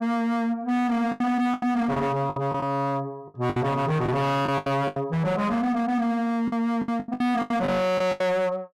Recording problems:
distorted audio; hard clipping, signal-to-distortion ratio 6 dB
packet loss; 12% of the sound replaced, filled with the last packet

